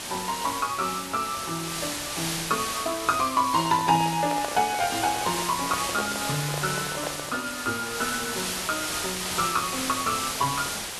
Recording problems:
hiss; slope 0 dB per octave, SNR 3 dB
microphone handling noise; from 3.5 to 7.5 s; peak 0 dB vs average level

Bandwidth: 12.5 kHz